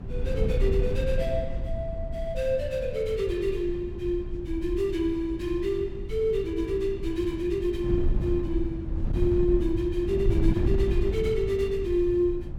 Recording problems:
wind noise; below 100 Hz, SNR 4 dB

